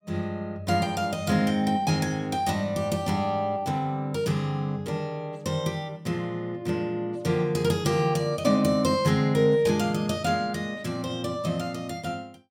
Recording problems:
none

